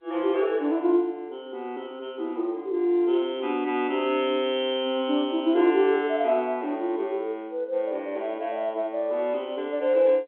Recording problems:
telephone audio; 260 Hz to 3.4 kHz, G.711

